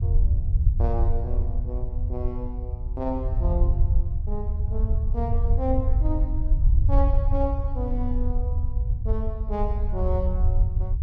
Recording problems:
rumble; below 74 Hz, SNR -7 dB

